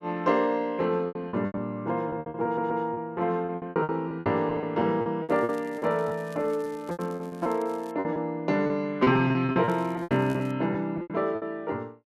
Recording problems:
lost packets; 15% of the sound replaced, filled with repeated pitch periods
stutter; at 2.5 s
crackling; from 5.5 to 8 s and at 9.5 s; loose cable, SNR 27 dB

